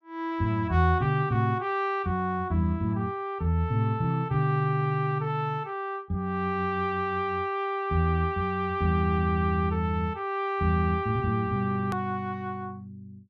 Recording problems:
hard cut with a click; at 12 s

